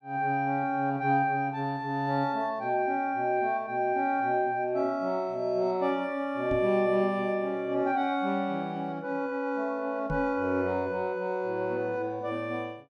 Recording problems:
knock on the microphone; at 6.5 s and at 10 s; peak -2 dB vs average level

